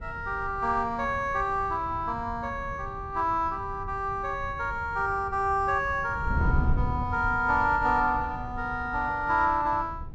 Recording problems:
wind noise; below 120 Hz, SNR 9 dB

